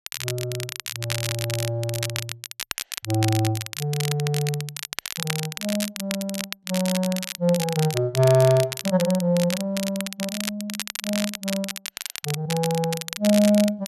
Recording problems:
crackle; vinyl, SNR 6 dB

